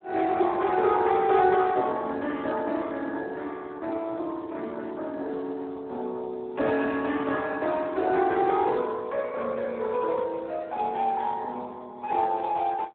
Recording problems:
telephone audio; 240 Hz to 3.4 kHz, Speex

